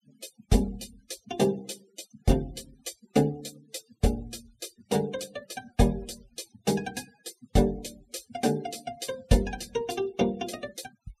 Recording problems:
noise reduction artefacts; signal-to-artefact ratio 24 dB

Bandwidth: 14 kHz